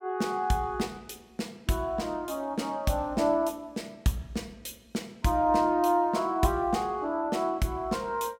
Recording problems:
none

